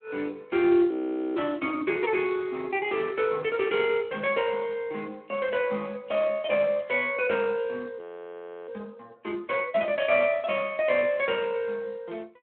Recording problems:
telephone audio; 260 Hz to 3.7 kHz, Speex
audio freezing; at 1 s and at 8 s for 0.5 s

